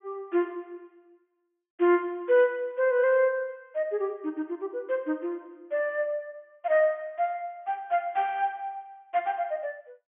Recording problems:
treble cut off; nothing above 3.3 kHz

